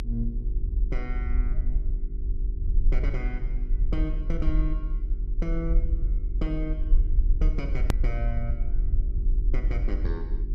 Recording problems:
hum; 50 Hz, harmonics up to 400 Hz, SNR 10 dB
rumble; below 44 Hz, SNR -7 dB
click at an edit; at 8 s

